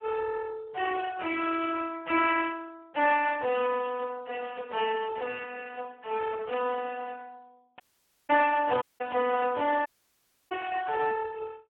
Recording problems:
telephone audio; 260 Hz to 2.6 kHz, Speex
burst of static; at 3 s and at 6.5 s; peak -7 dB vs average level
dropout; at 8 s, at 9 s and at 10 s for 0.5 s

